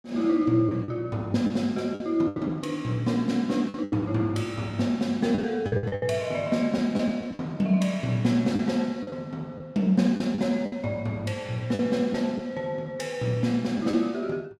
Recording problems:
lost packets; 7% of the sound replaced, filled with the last packet

